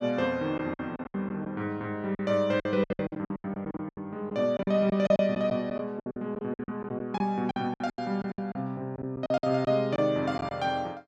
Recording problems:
packet loss; 16% of the sound replaced, filled with silence

